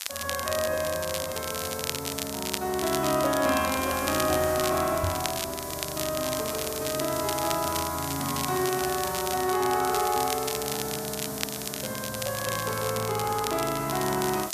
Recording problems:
background hiss; SNR 8 dB
crackle; vinyl, SNR 6 dB
microphone thump; at 5 s; peak +2 dB vs average level

